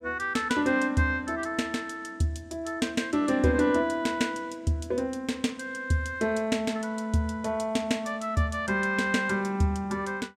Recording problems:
none

